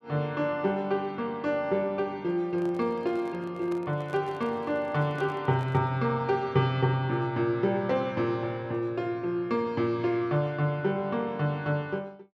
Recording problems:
handling noise; from 2.5 to 6 s; peak -11 dB vs average level

